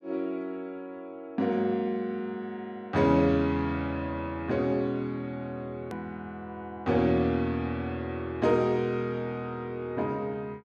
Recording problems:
edit click; at 6 s

